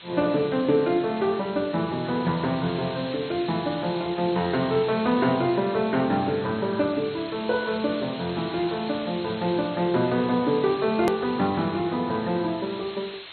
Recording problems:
codec artefacts; MP2, log-spectral distance 18 dB, nothing above 13.1 kHz
background hiss; SNR 15 dB
click at an edit; at 11 s

